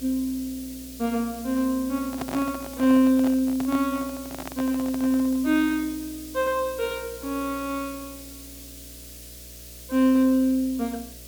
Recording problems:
hum; 60 Hz, harmonics up to 660 Hz, SNR 23 dB
background hiss; slope +5 dB per octave, SNR 16 dB
handling noise; from 2 to 5.5 s; peak -5 dB vs average level

